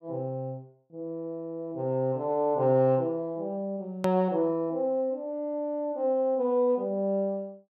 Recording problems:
click at an edit; at 4 s

